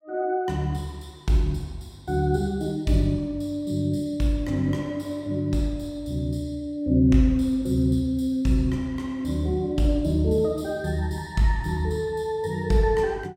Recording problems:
none

